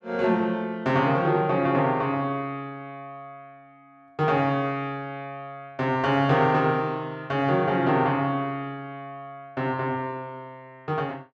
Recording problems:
none

